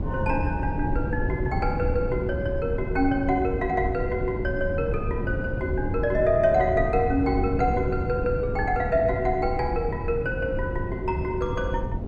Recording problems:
wind on the microphone; below 190 Hz, SNR 4 dB

